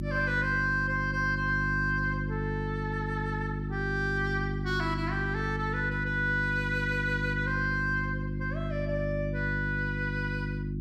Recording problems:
mains hum; 50 Hz, harmonics up to 350 Hz, SNR 3 dB

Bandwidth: 14.5 kHz